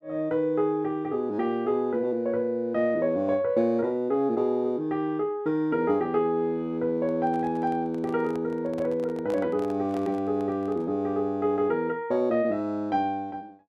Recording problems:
microphone handling noise; from 7 to 11 s; peak -9 dB vs average level

